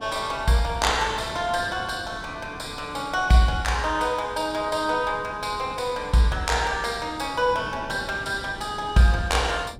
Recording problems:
wind noise; below 380 Hz, SNR 18 dB

